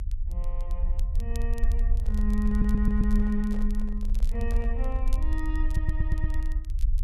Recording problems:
rumble; below 54 Hz, SNR -3 dB
crackle; vinyl, SNR 22 dB
microphone handling noise; from 2 to 5 s; peak -9 dB vs average level
audio stuttering; at 2.5 s and at 5.5 s

